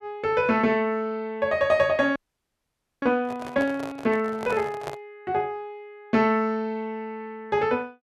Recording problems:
frozen audio; at 2 s for 1 s
microphone handling noise; from 3 to 5 s; peak -5 dB vs average level

